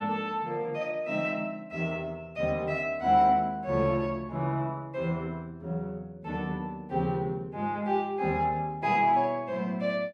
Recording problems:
none

